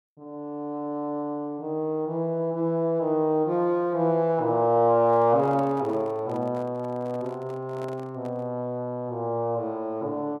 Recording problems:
handling noise; from 5 to 8.5 s; peak -12 dB vs average level

